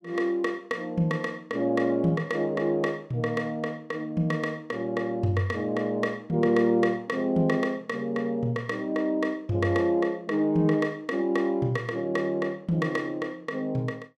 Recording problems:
none

